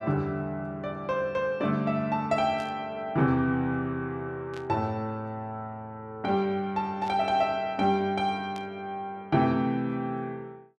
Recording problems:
burst of static; 4 times, first at 2.5 s; peak -13 dB vs average level

